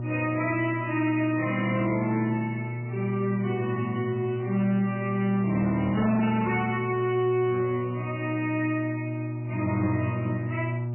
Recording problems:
codec artefacts; MP3, log-spectral distance 3 dB, nothing above 2.5 kHz
distorted audio; hard clipping, signal-to-distortion ratio 10 dB
electrical hum; 60 Hz, harmonics up to 600 Hz, SNR 5 dB

